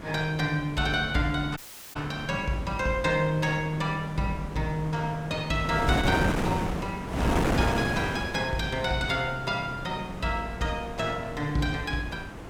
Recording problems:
wind noise; below 850 Hz, SNR 5 dB
audio cutting out; at 1.5 s

